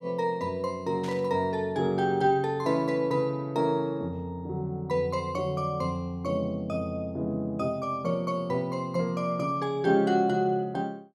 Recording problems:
burst of static; at 1 s; peak -12 dB vs average level

